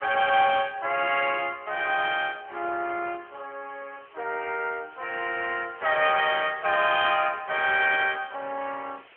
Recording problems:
phone line; 300 Hz to 3.4 kHz, AMR-NB
hiss; SNR 27 dB

